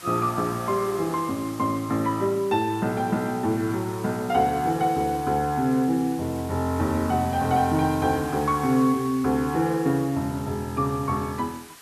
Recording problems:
hiss; SNR 18 dB

